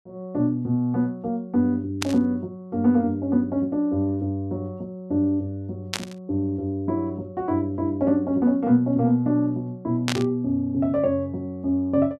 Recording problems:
burst of static; at 2 s, at 6 s and at 10 s; peak +2 dB vs average level

